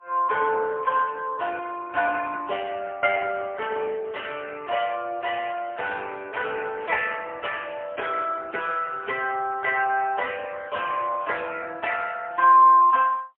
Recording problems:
phone line; 370 Hz to 3.3 kHz, AMR-NB, then MP3

